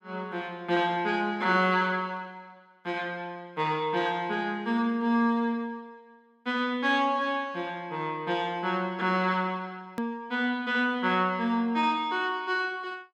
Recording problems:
click at an edit; at 10 s

